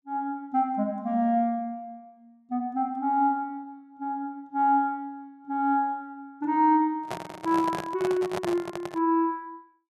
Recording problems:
handling noise; from 7 to 9 s; peak -1 dB vs average level

